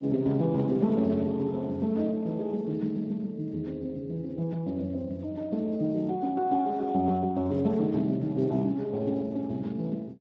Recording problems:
lossy compression; Speex, log-spectral distance 2 dB

